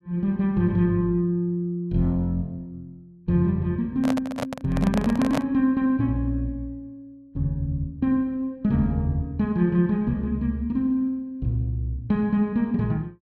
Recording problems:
microphone handling noise; from 4 to 5.5 s; peak +1 dB vs average level

